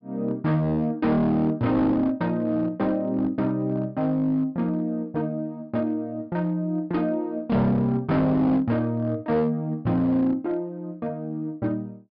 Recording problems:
treble missing; nothing above 5.5 kHz
distortion; hard clipping, uneven, signal-to-distortion ratio 12 dB

